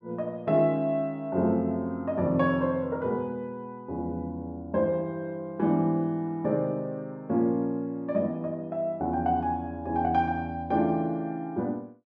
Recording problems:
none

